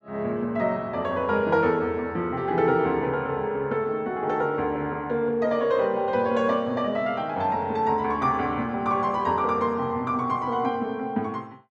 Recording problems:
none

